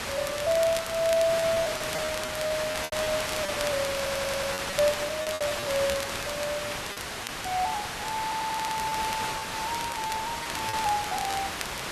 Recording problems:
hiss; SNR 2 dB
crackling; vinyl, SNR 11 dB
lost packets; 7% of the sound replaced, filled with repeated pitch periods
stutter; at 4 s and at 8 s

